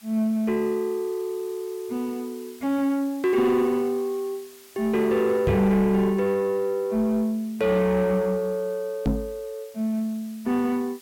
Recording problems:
distorted audio; soft clipping, signal-to-distortion ratio 11 dB
background hiss; slope +1 dB per octave, SNR 24 dB
microphone thump; at 5.5 s and at 9 s; peak +4 dB vs average level

